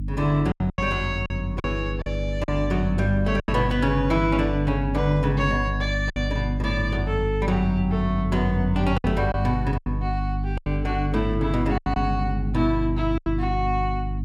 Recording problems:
electrical hum; 50 Hz, harmonics up to 300 Hz, SNR 3 dB
packet loss; 6% of the sound replaced, filled with silence

